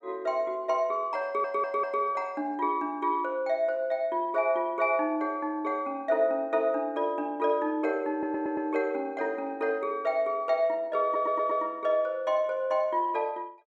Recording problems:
stutter; at 1.5 s, at 8 s and at 11 s

